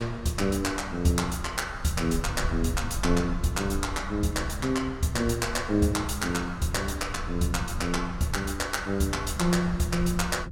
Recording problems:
low-frequency rumble; below 88 Hz, SNR 10 dB

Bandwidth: 17 kHz